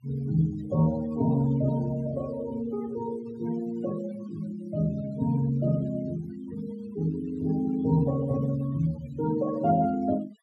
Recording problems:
noise reduction artefacts; signal-to-artefact ratio 18 dB

